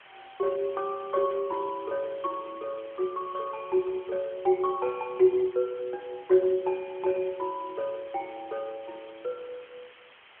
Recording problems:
phone line; 320 Hz to 3.1 kHz, AMR-NB
background hiss; SNR 22 dB

